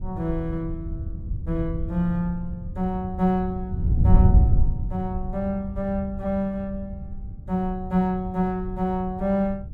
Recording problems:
wind noise; below 100 Hz, SNR 1 dB

